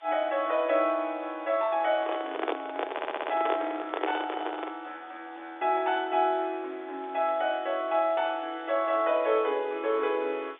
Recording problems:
telephone audio; 280 Hz to 3.8 kHz, G.711
hiss; SNR 28 dB
crackle; from 2 to 4.5 s and from 7 to 9.5 s; loose cable, SNR 30 dB
microphone handling noise; from 2 to 5 s; peak +3 dB vs average level
stutter; at 3 s

